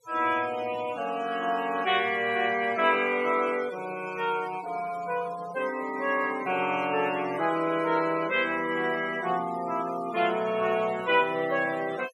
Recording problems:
denoising artefacts; signal-to-artefact ratio 16 dB

